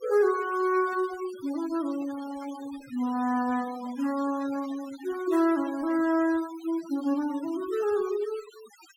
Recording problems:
noise reduction artefacts; signal-to-artefact ratio 17 dB

